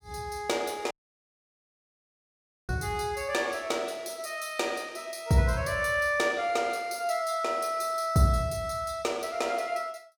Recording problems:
audio cutting out; at 1 s for 2 s

